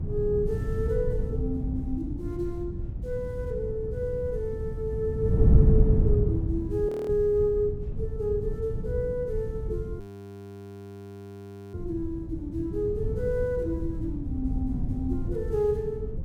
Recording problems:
hum; 60 Hz, harmonics up to 420 Hz, SNR 18 dB
wind noise; below 140 Hz, SNR 0 dB
audio freezing; at 7 s and at 10 s for 1.5 s

